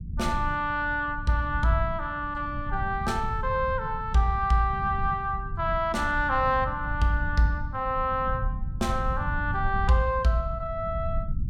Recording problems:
rumble; below 110 Hz, SNR 8 dB

